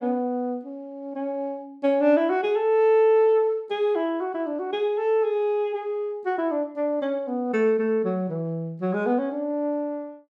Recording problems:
none

